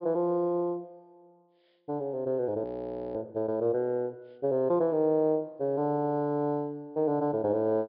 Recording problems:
low-pass filter; nothing above 5.2 kHz
audio freezing; at 2.5 s for 0.5 s

